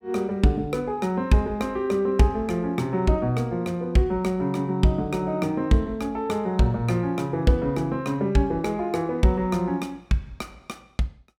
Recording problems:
none

